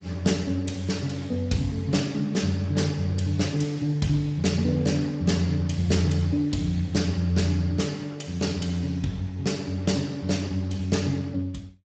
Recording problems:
lossy compression; Speex, log-spectral distance 4 dB, nothing above 7.6 kHz

